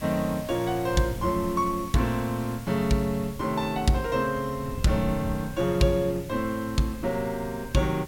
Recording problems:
background hiss; SNR 19 dB
wind noise; below 140 Hz, SNR 14 dB

